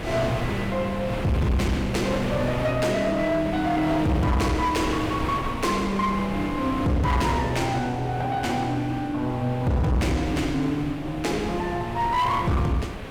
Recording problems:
distortion; hard clipping, signal-to-distortion ratio 7 dB
wind noise; below 1.2 kHz, SNR 8 dB

